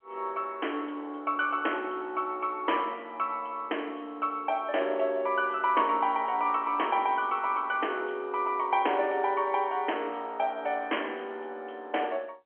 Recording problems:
telephone audio; 280 Hz to 3.2 kHz, G.711

